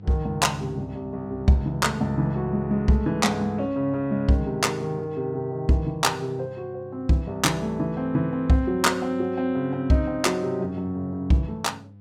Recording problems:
electrical hum; 50 Hz, harmonics up to 500 Hz, SNR 20 dB

